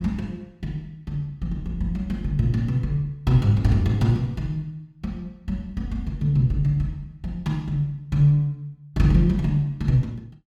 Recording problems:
none

